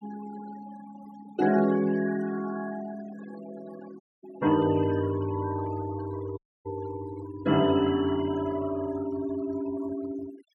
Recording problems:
noise reduction artefacts; signal-to-artefact ratio 16 dB
dropout; at 4 s and at 6.5 s

